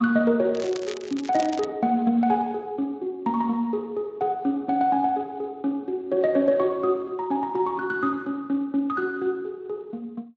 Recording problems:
lossy codec; MP3, then Speex, log-spectral distance 2 dB
crackle; from 0.5 to 1.5 s; loose cable, SNR 16 dB

